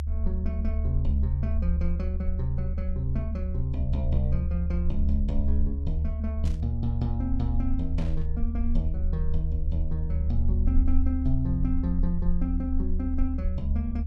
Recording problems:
low-frequency rumble; below 74 Hz, SNR -3 dB
static burst; at 6.5 s and at 8 s; peak -11 dB vs average level

